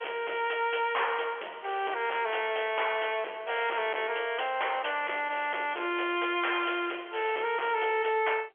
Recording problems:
telephone audio; 300 Hz to 3.4 kHz, G.711
distorted audio; hard clipping, uneven, signal-to-distortion ratio 10 dB

